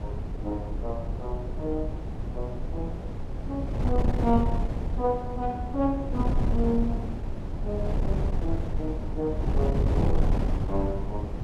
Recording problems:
wind noise; below 140 Hz, SNR -2 dB

